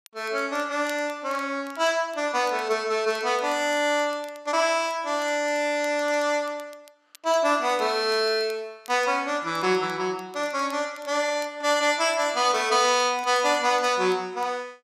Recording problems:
crackling; vinyl, SNR 27 dB

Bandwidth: 14 kHz